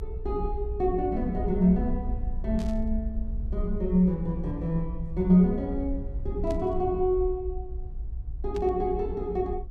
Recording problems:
low-frequency rumble; below 60 Hz, SNR 8 dB
burst of static; at 2.5 s, at 6.5 s and at 8.5 s; peak -14 dB vs average level

